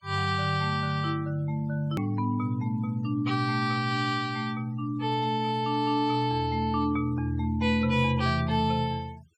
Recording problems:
noise reduction artefacts; signal-to-artefact ratio 25 dB
hard cut with a click; at 2 s

